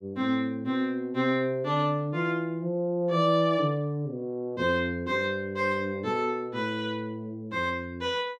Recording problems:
none

